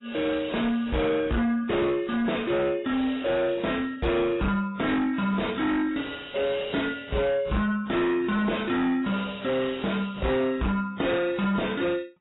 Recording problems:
codec artefacts; AAC, then AAC, log-spectral distance 5 dB, nothing above 3.8 kHz
distorted audio; soft clipping, signal-to-distortion ratio 6 dB

